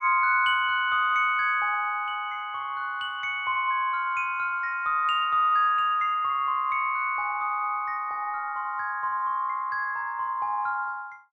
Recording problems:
none

